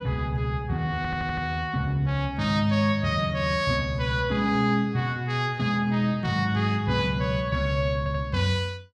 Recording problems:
audio stuttering; at 1 s and at 8 s

